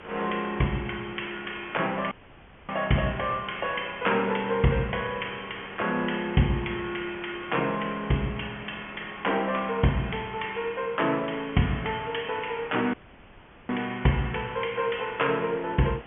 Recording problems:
treble missing; nothing above 3.3 kHz
background hiss; SNR 16 dB
audio cutting out; at 2 s for 0.5 s and at 13 s for 1 s

